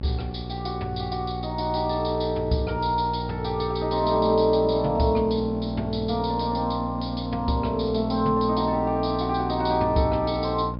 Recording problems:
treble cut off; nothing above 5.5 kHz
hum; 60 Hz, harmonics up to 900 Hz, SNR 8 dB

